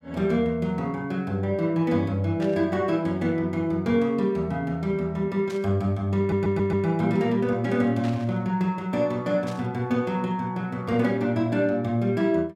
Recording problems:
burst of static; 4 times, first at 2.5 s; peak -11 dB vs average level
audio stuttering; at 6 s

